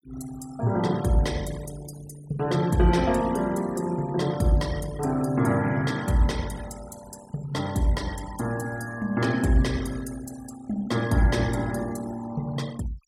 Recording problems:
noise reduction artefacts; signal-to-artefact ratio 18 dB

